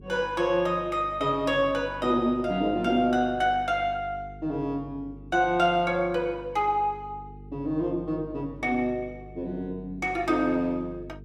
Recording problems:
hum; 50 Hz, harmonics up to 450 Hz, SNR 19 dB

